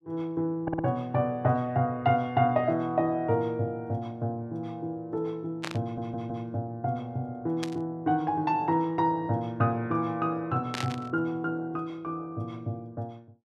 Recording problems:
audio stuttering; at 0.5 s and at 6 s
static burst; at 5.5 s, at 7.5 s and at 11 s; peak -1 dB vs average level

